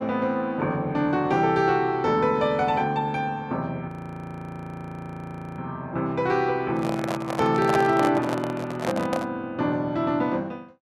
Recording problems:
audio freezing; at 4 s for 1.5 s
microphone handling noise; from 6.5 to 9.5 s; peak +2 dB vs average level

